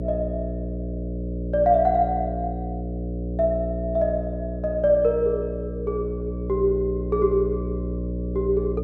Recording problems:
electrical hum; 60 Hz, harmonics up to 600 Hz, SNR 6 dB

